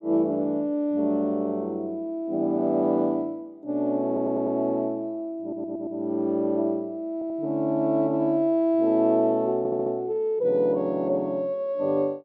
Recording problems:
stutter; 4 times, first at 4 s

